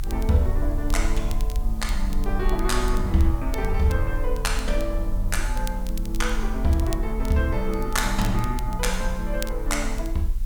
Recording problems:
background hiss; slope -1 dB per octave, SNR 23 dB
low-frequency rumble; below 40 Hz, strongest tone 22 Hz, SNR 3 dB
crackling; vinyl, SNR 18 dB

